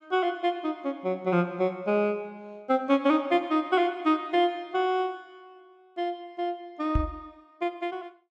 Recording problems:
knock on the microphone; at 7 s; peak +4 dB vs average level

